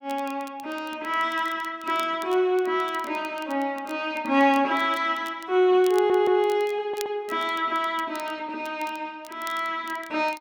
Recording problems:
crackle; vinyl, SNR 22 dB
audio stuttering; at 6 s and at 7 s

